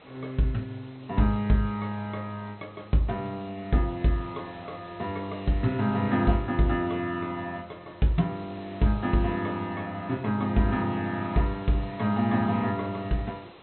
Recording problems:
treble missing; nothing above 4.1 kHz
hiss; SNR 21 dB

